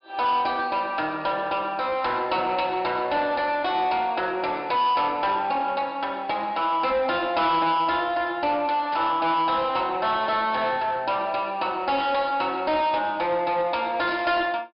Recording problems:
treble cut off; nothing above 5.5 kHz
distortion; soft clipping, signal-to-distortion ratio 12 dB
static burst; at 9 s, at 12 s and at 14 s; peak -10 dB vs average level

